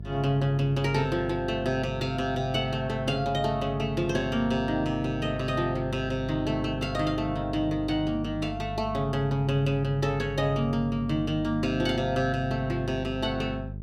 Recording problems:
electrical hum; 50 Hz, harmonics up to 450 Hz, SNR 10 dB

